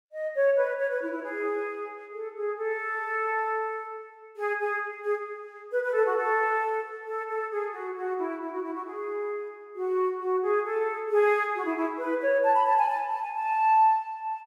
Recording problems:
none

